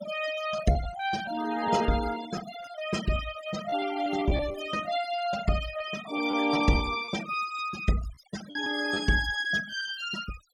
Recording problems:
denoising artefacts; signal-to-artefact ratio 12 dB
packet loss; 8% of the sound replaced, filled with repeated pitch periods

